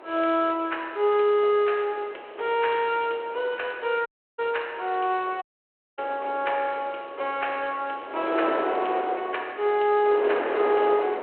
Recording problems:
phone line; 340 Hz to 3.3 kHz, G.726
wind noise; below 970 Hz, SNR 7 dB
dropout; at 4 s and at 5.5 s for 0.5 s

